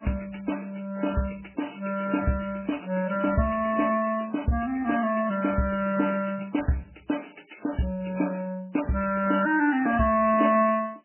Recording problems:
lossy codec; MP3, then MP3, log-spectral distance 8 dB, nothing above 3 kHz

